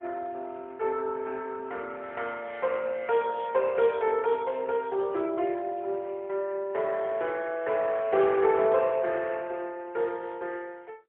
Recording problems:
telephone audio; 340 Hz to 3.6 kHz, AMR-NB, then MP3

